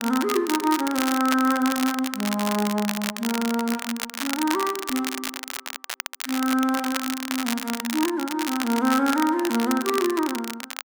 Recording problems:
crackling; vinyl, SNR 6 dB

